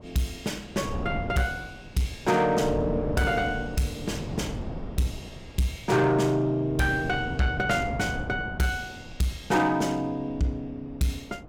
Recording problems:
distortion; soft clipping, signal-to-distortion ratio 11 dB
wind on the microphone; below 360 Hz, SNR 10 dB

